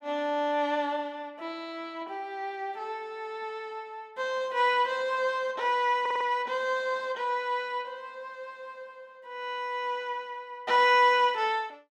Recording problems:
stutter; at 6 s

